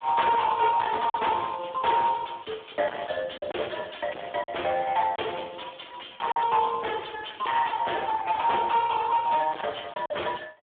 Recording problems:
telephone audio; 300 Hz to 3.5 kHz, Speex
distortion; hard clipping, signal-to-distortion ratio 6 dB
lost packets; 3% of the sound replaced, filled with silence

